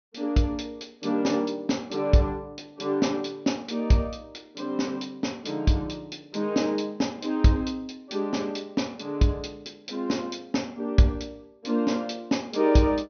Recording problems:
treble missing; nothing above 6.3 kHz

